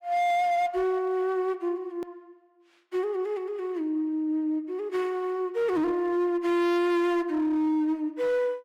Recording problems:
distorted audio; hard clipping, signal-to-distortion ratio 11 dB
hard cut with a click; at 2 s

